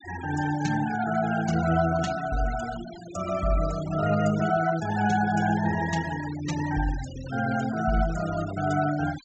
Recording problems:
treble cut off; nothing above 8 kHz
denoising artefacts; signal-to-artefact ratio 14 dB

